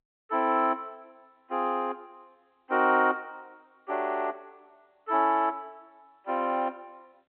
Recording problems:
phone line; 220 Hz to 3.2 kHz, G.711

